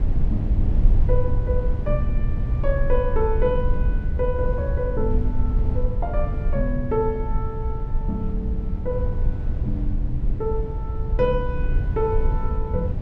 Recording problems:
low-frequency rumble; below 68 Hz, SNR -2 dB

